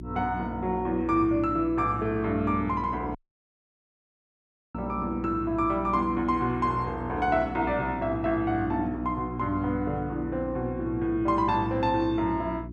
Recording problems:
electrical hum; 60 Hz, harmonics up to 360 Hz, SNR 11 dB
dropout; at 3 s for 1.5 s

